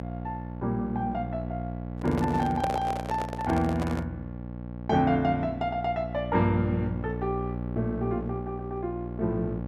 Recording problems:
hum; 60 Hz, harmonics up to 1.1 kHz, SNR 7 dB
microphone handling noise; from 2 to 4 s; peak +2 dB vs average level

